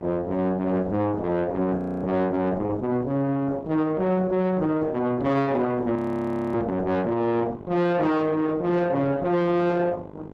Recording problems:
codec artefacts; Opus, log-spectral distance 2 dB, nothing above 13.1 kHz
distortion; soft clipping, signal-to-distortion ratio 6 dB
electrical hum; 50 Hz, harmonics up to 1.6 kHz, SNR 20 dB
frozen audio; at 2 s and at 6 s for 0.5 s
knock on the microphone; at 6.5 s; peak 0 dB vs average level

